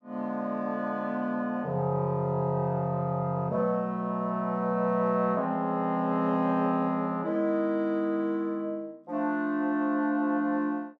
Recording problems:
none

